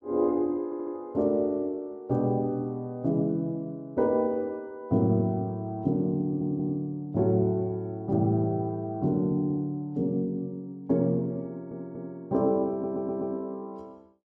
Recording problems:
stutter; 4 times, first at 0.5 s

